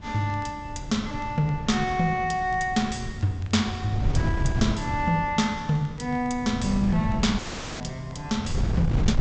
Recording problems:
treble missing; nothing above 8 kHz
wind on the microphone; below 150 Hz, SNR 5 dB
crackle; vinyl, SNR 30 dB
audio cutting out; at 7.5 s

